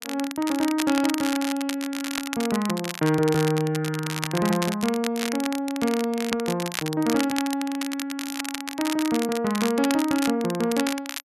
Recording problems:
crackling; vinyl, SNR 7 dB

